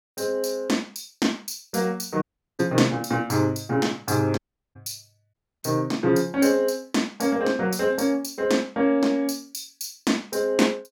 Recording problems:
dropout; at 2 s, at 4.5 s and at 5.5 s

